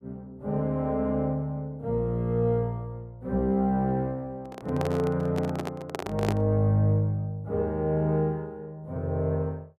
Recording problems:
microphone handling noise; from 4.5 to 6.5 s; peak +1 dB vs average level

